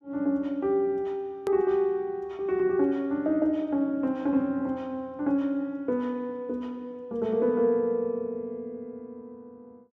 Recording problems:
hard cut with a click; at 1.5 s

